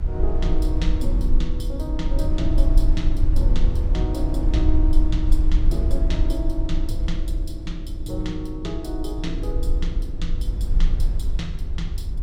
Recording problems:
electrical hum; 50 Hz, harmonics up to 400 Hz, SNR 7 dB
rumble; below 50 Hz, SNR -6 dB

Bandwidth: 16 kHz